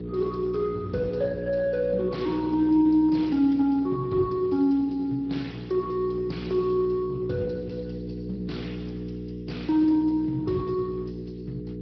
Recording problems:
treble cut off; nothing above 5.2 kHz
lossy compression; Speex, log-spectral distance 3 dB
hum; 60 Hz, harmonics up to 480 Hz, SNR 11 dB

